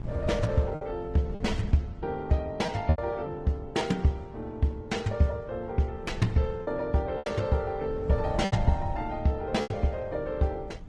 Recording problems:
lossy compression; MP3, then Opus, log-spectral distance 2 dB
wind noise; below 120 Hz, SNR 12 dB
packet loss; 5% of the sound replaced, filled with repeated pitch periods

